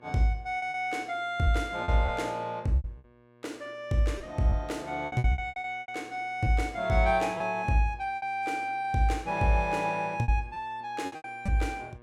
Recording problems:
electrical hum; 60 Hz, harmonics up to 2.9 kHz, SNR 27 dB
lost packets; 9% of the sound replaced, filled with repeated pitch periods

